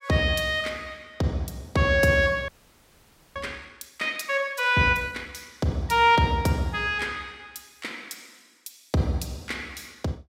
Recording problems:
frozen audio; at 2.5 s for 1 s

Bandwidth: 16 kHz